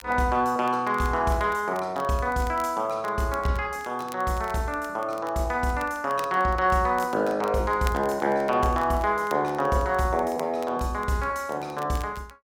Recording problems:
crackle; vinyl, SNR 23 dB

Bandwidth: 17 kHz